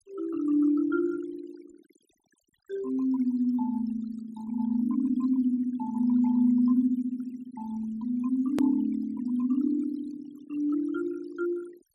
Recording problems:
noise reduction artefacts; signal-to-artefact ratio 23 dB
edit click; at 8.5 s

